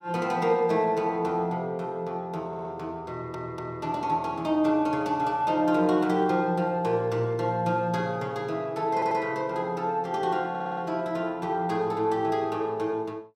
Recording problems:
audio stuttering; 4 times, first at 2.5 s

